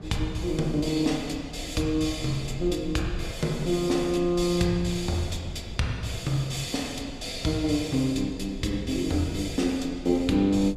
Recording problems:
low-frequency rumble; below 72 Hz, SNR 16 dB
wind noise; below 310 Hz, SNR 19 dB

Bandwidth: 14.5 kHz